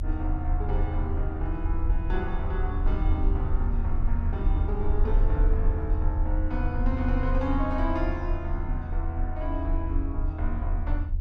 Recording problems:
rumble; below 78 Hz, strongest tone 30 Hz, SNR -5 dB

